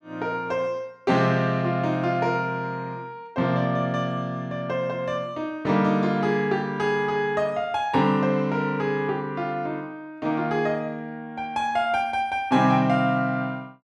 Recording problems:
none

